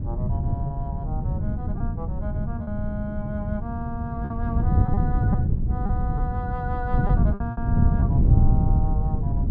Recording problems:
wind noise; below 140 Hz, SNR -9 dB
packet loss; 4% of the sound replaced, filled with repeated pitch periods

